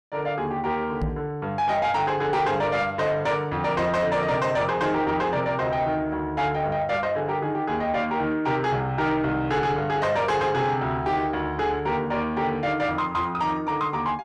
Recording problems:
distorted audio; soft clipping, signal-to-distortion ratio 11 dB
knock on the microphone; at 1 s; peak -1 dB vs average level

